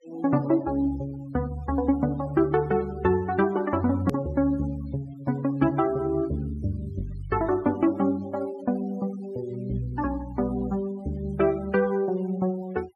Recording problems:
denoising artefacts; signal-to-artefact ratio 23 dB
click at an edit; at 4 s

